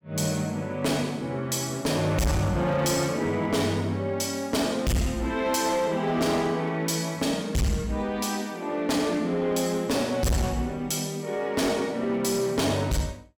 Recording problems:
distorted audio; hard clipping, signal-to-distortion ratio 6 dB

